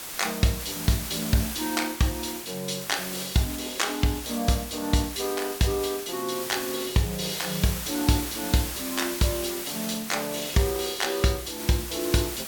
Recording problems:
background hiss; slope -1 dB per octave, SNR 6 dB

